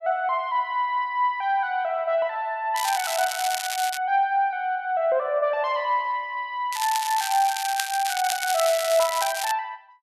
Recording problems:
crackle; from 3 to 4 s and from 6.5 to 9.5 s; loose cable, SNR 6 dB

